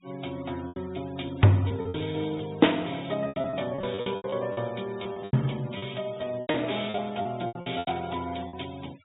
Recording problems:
treble missing; nothing above 4 kHz
noise reduction artefacts; signal-to-artefact ratio 20 dB
packet loss; 14% of the sound replaced, filled with repeated pitch periods

